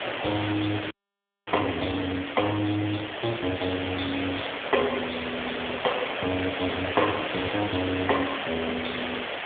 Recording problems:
telephone audio; 240 Hz to 3.5 kHz, AMR-NB
background hiss; SNR 3 dB
audio freezing; at 1 s for 0.5 s

